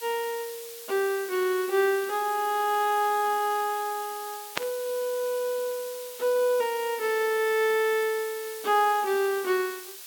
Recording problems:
background hiss; slope +3 dB per octave, SNR 13 dB
burst of static; at 4.5 s; peak +3 dB vs average level

